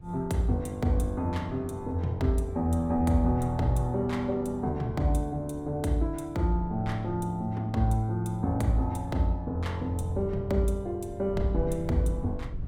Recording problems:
wind noise; below 110 Hz, SNR 15 dB

